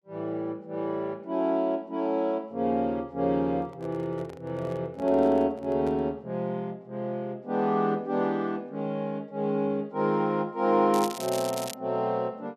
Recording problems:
handling noise; from 3.5 to 6 s; peak -10 dB vs average level
crackle; at 11 s; loose cable, SNR 10 dB

